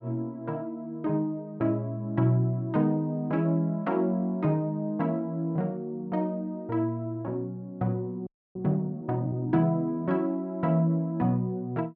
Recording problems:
frozen audio; at 8.5 s

